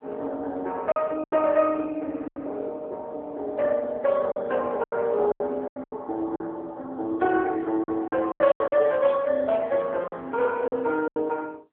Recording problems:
phone line; 280 Hz to 3.4 kHz, AMR-NB
lost packets; 9% of the sound replaced, filled with silence

